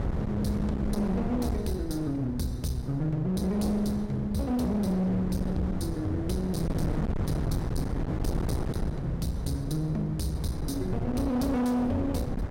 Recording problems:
distorted audio; hard clipping, uneven, signal-to-distortion ratio 6 dB
wind on the microphone; below 260 Hz, SNR 4 dB

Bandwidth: 16 kHz